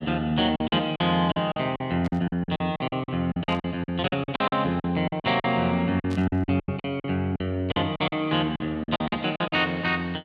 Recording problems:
packet loss; 16% of the sound replaced, filled with silence
burst of static; at 2 s, at 3.5 s and at 6 s; peak -12 dB vs average level

